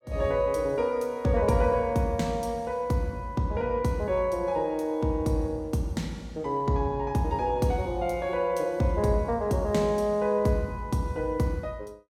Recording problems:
none

